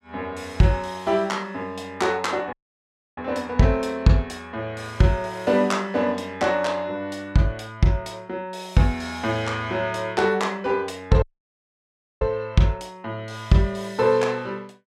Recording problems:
dropout; at 2.5 s for 0.5 s and at 11 s for 1 s

